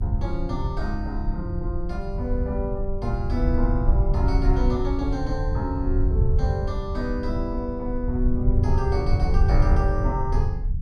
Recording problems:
low-frequency rumble; below 84 Hz, SNR -3 dB

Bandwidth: 13 kHz